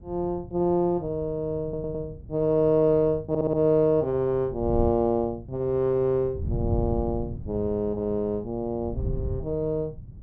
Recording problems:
wind noise; below 130 Hz, SNR 11 dB
stutter; at 1.5 s and at 3.5 s

